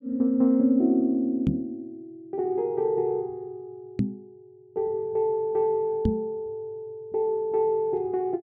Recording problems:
microphone thump; at 1.5 s, at 4 s and at 6 s; peak +5 dB vs average level

